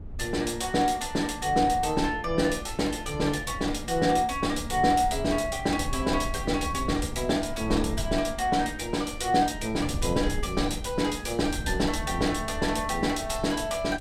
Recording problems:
wind noise; below 100 Hz, SNR 11 dB

